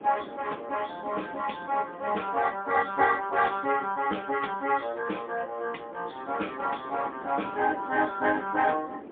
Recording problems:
phone line; 240 Hz to 3.5 kHz, AMR-NB, then MP3
wind noise; below 510 Hz, SNR 18 dB

